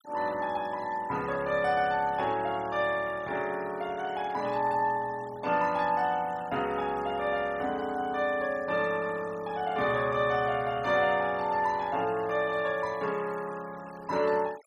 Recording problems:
denoising artefacts; signal-to-artefact ratio 21 dB

